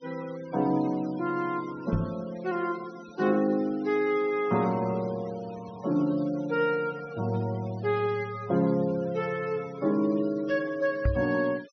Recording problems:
low-pass filter; nothing above 6.1 kHz
noise reduction artefacts; signal-to-artefact ratio 21 dB
microphone bump; at 2 s and at 11 s; peak +5 dB vs average level

